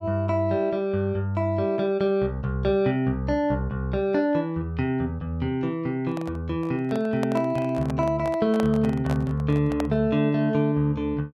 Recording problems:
microphone handling noise; from 6 to 10 s; peak -2 dB vs average level

